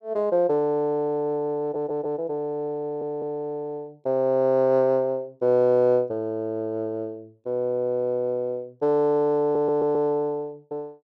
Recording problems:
stutter; at 1.5 s, at 3 s and at 9.5 s

